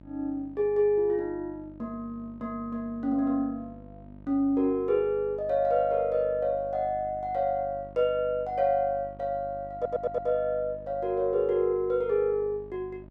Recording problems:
hum; 50 Hz, harmonics up to 950 Hz, SNR 20 dB
audio stuttering; at 10 s

